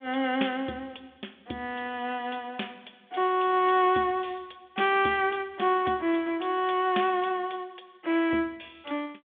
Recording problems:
phone line; 220 Hz to 3.5 kHz, G.726

